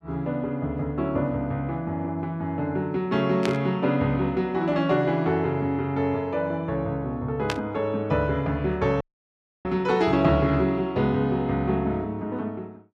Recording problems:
burst of static; at 3.5 s and at 7.5 s; peak +1 dB vs average level
dropout; at 9 s for 0.5 s

